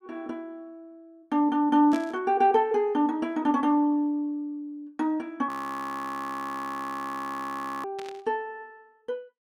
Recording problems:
burst of static; at 2 s and at 8 s; peak -11 dB vs average level
audio freezing; at 5.5 s for 2.5 s

